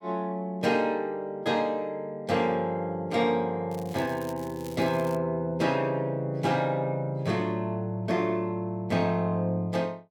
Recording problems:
crackle; from 3.5 to 5 s; loose cable, SNR 21 dB

